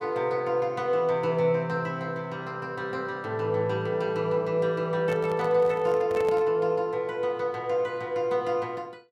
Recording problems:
handling noise; from 5 to 6.5 s; peak -6 dB vs average level

